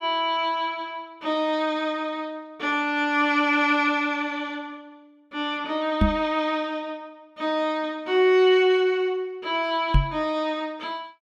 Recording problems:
microphone bump; at 6 s and at 10 s; peak +7 dB vs average level

